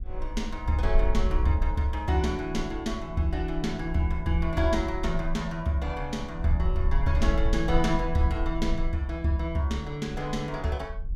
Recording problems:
wind on the microphone; below 52 Hz, SNR 5 dB

